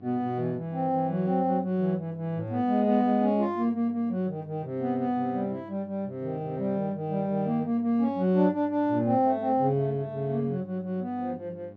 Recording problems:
electrical hum; 50 Hz, harmonics up to 1.1 kHz, SNR 22 dB

